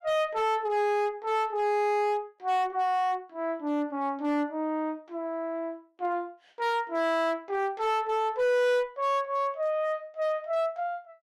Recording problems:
distortion; hard clipping, uneven, signal-to-distortion ratio 10 dB

